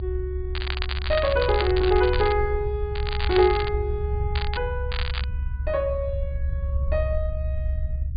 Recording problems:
low-pass filter; nothing above 4.7 kHz
low-frequency rumble; below 70 Hz, strongest tone 68 Hz, SNR 3 dB
crackle; 4 times, first at 0.5 s; loose cable, SNR 8 dB

